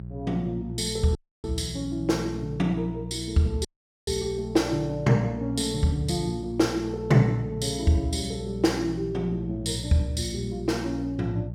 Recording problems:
electrical hum; 60 Hz, harmonics up to 420 Hz, SNR 10 dB
audio cutting out; at 1 s and at 3.5 s

